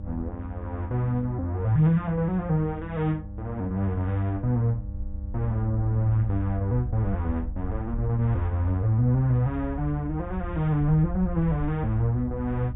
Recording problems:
low-pass filter; nothing above 4 kHz
hum; 50 Hz, harmonics up to 900 Hz, SNR 17 dB
rumble; below 72 Hz, SNR 10 dB

